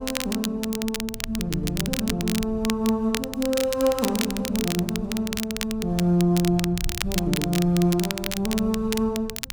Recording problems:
low-frequency rumble; below 110 Hz, SNR 15 dB
crackle; vinyl, SNR 7 dB

